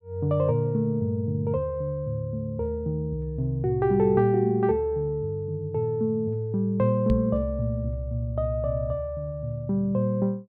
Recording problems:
microphone bump; at 7 s; peak +2 dB vs average level

